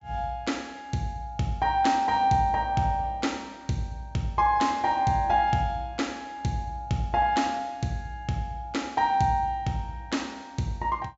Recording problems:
treble missing; nothing above 7.3 kHz

